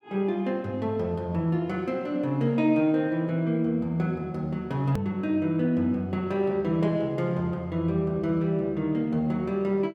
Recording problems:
hard cut with a click; at 5 s

